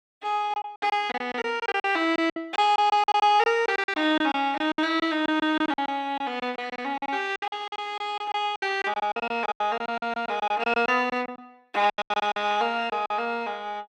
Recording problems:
packet loss; 16% of the sound replaced, filled with silence

